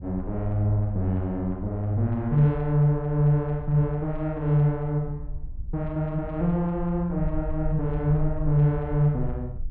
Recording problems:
rumble; below 58 Hz, SNR 13 dB

